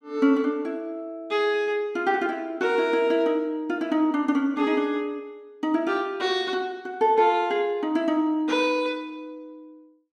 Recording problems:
none

